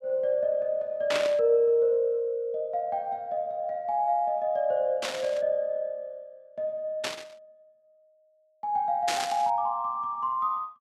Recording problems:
static burst; 4 times, first at 1 s; peak +2 dB vs average level

